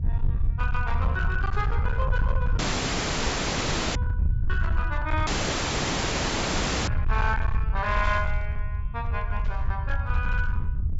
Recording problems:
treble cut off; nothing above 8 kHz
distorted audio; hard clipping, signal-to-distortion ratio 10 dB
low-frequency rumble; below 78 Hz, SNR -2 dB
static burst; 4 times, first at 1.5 s; peak -13 dB vs average level
dropout; at 2.5 s for 1.5 s and at 5.5 s for 1.5 s

